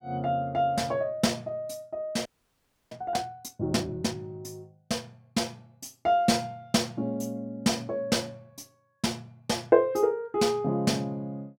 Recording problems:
audio freezing; at 2.5 s for 0.5 s

